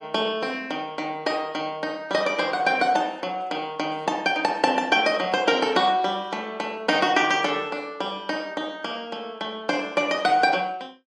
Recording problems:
lossy codec; MP3, log-spectral distance 2 dB, nothing above 10.7 kHz

